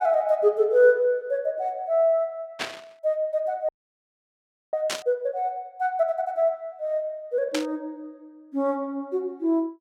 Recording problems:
static burst; at 2.5 s, at 5 s and at 7.5 s; peak +1 dB vs average level
audio freezing; at 3.5 s for 1 s

